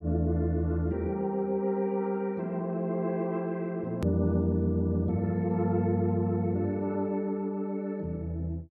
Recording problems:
hard cut with a click; at 4 s

